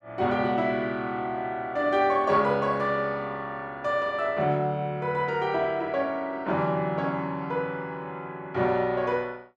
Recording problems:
none

